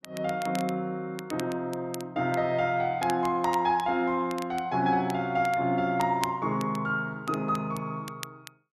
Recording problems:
crackling; vinyl, SNR 17 dB

